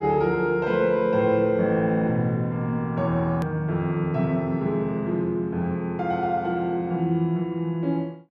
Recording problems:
hard cut with a click; at 3.5 s

